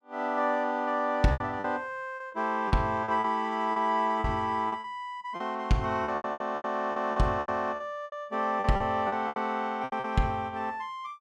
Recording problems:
packet loss; 13% of the sound replaced, filled with repeated pitch periods

